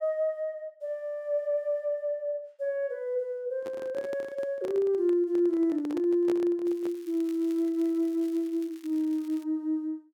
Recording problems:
microphone handling noise; from 3.5 to 7 s; peak -4 dB vs average level
crackle; from 6.5 to 9.5 s; loose cable, SNR 26 dB

